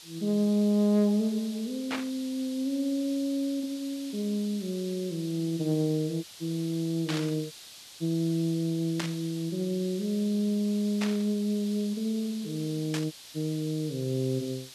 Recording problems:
hiss; SNR 15 dB
static burst; 5 times, first at 2 s; peak 0 dB vs average level
dropout; at 6 s, at 7.5 s and at 13 s

